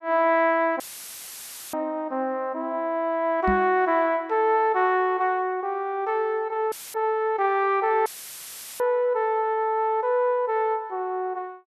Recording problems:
audio cutting out; at 1 s for 1 s, at 6.5 s and at 8 s for 0.5 s; filled with static
knock on the microphone; at 3.5 s; peak 0 dB vs average level

